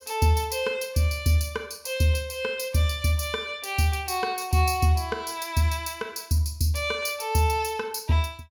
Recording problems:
none

